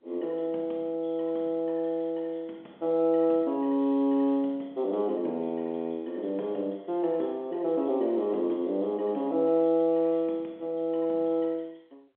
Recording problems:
phone line; 220 Hz to 3.4 kHz, G.711

